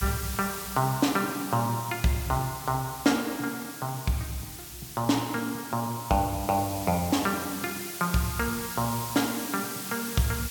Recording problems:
background hiss; slope +3 dB per octave, SNR 8 dB

